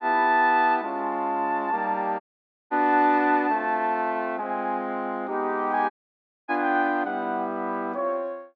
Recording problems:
dropout; at 2 s for 0.5 s and at 6 s for 0.5 s

